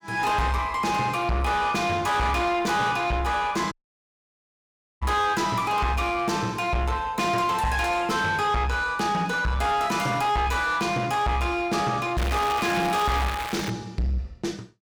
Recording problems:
distortion; soft clipping, signal-to-distortion ratio 7 dB
audio cutting out; at 3.5 s for 1.5 s
crackle; from 12 to 14 s; loose cable, SNR 7 dB

